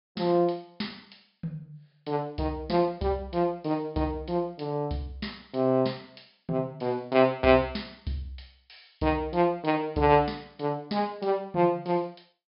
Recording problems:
treble cut off; nothing above 5.5 kHz

